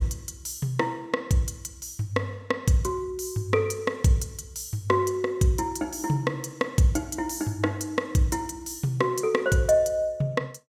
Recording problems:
none

